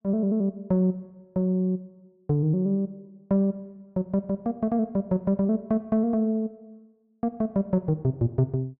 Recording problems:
none

